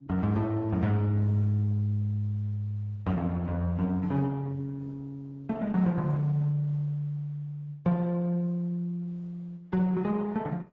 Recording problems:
lossy codec; Opus, then AAC, log-spectral distance 2 dB

